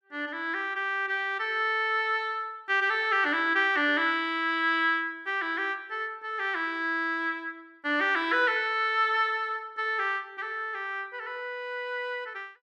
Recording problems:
none

